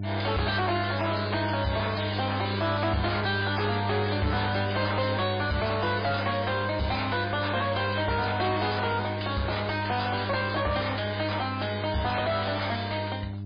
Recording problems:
lossy compression; MP3, log-spectral distance 7 dB, nothing above 4.5 kHz
distortion; soft clipping, signal-to-distortion ratio 5 dB
hum; 50 Hz, harmonics up to 600 Hz, SNR 5 dB

